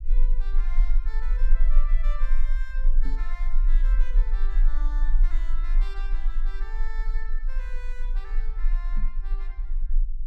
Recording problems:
rumble; below 32 Hz, strongest tone 20 Hz, SNR -17 dB
microphone bump; at 3 s and at 9 s; peak +7 dB vs average level

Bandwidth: 14.5 kHz